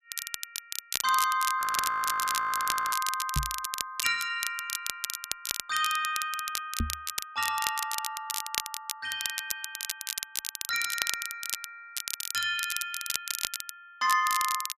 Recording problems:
crackling; vinyl, SNR 3 dB
audio freezing; at 1.5 s for 1.5 s
knock on the microphone; at 3.5 s and at 7 s; peak +4 dB vs average level

